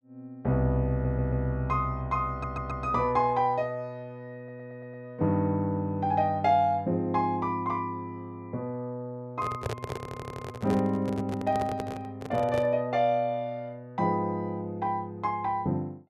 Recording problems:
audio stuttering; 4 times, first at 1 s
handling noise; from 9.5 to 13 s; peak 0 dB vs average level

